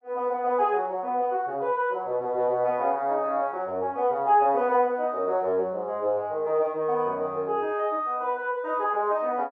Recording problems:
none

